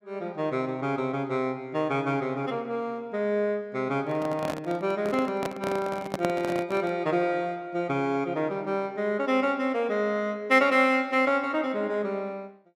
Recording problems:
microphone handling noise; from 4 to 7 s; peak +1 dB vs average level

